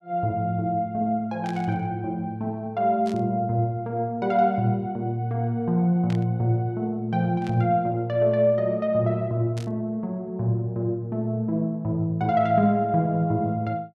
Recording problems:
static burst; 5 times, first at 1.5 s; peak -12 dB vs average level

